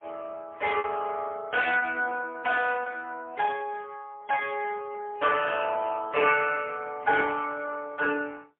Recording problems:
phone line; 300 Hz to 3.3 kHz, AMR-NB, then MP3
lost packets; 3% of the sound replaced, filled with repeated pitch periods
burst of static; at 3.5 s; peak -13 dB vs average level

